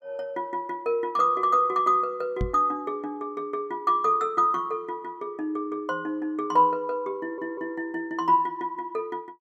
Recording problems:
knock on the microphone; at 2.5 s; peak +1 dB vs average level
stutter; at 7 s

